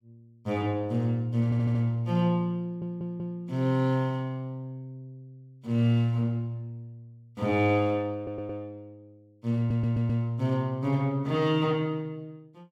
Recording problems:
stutter; 4 times, first at 1.5 s

